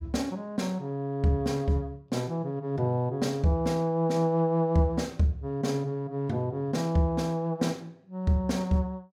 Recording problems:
none

